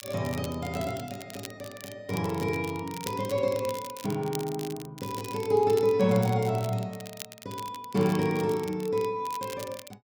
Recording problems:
crackle; vinyl, SNR 15 dB

